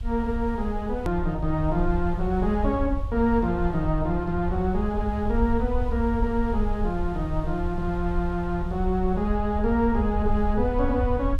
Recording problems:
background hiss; SNR 28 dB
low-frequency rumble; below 72 Hz, SNR 5 dB
edit click; at 1 s

